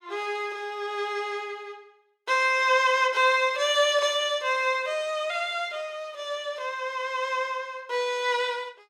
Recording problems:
none

